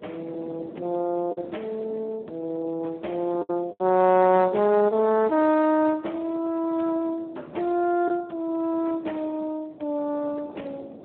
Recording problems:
telephone audio; 240 Hz to 3.2 kHz, Speex
wind noise; below 570 Hz, SNR 20 dB
lost packets; 2% of the sound replaced, filled with the last packet

